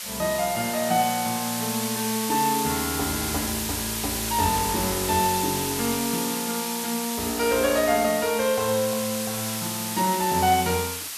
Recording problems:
hiss; slope +3 dB per octave, SNR 3 dB

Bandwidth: 14 kHz